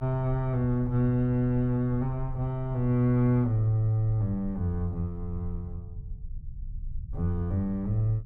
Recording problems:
rumble; below 68 Hz, SNR 14 dB

